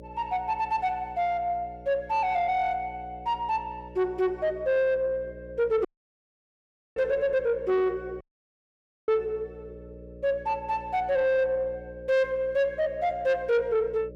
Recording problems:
distortion; soft clipping, signal-to-distortion ratio 11 dB
hum; 60 Hz, harmonics up to 600 Hz, SNR 19 dB
audio cutting out; at 6 s for 1 s and at 8 s for 1 s

